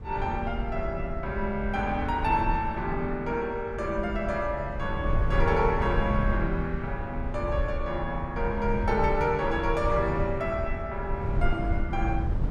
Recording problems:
low-frequency rumble; below 90 Hz, SNR 4 dB

